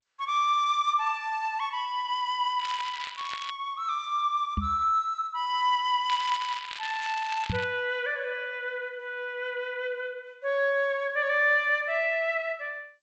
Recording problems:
codec artefacts; G.722, log-spectral distance 3 dB
crackle; at 2.5 s and from 6 to 7.5 s; loose cable, SNR 11 dB
knock on the microphone; at 4.5 s and at 7.5 s; peak +2 dB vs average level

